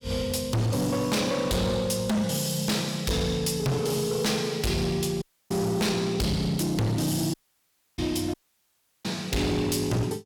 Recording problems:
distorted audio; hard clipping, signal-to-distortion ratio 6 dB
audio cutting out; at 5 s, at 7.5 s for 0.5 s and at 8.5 s for 0.5 s

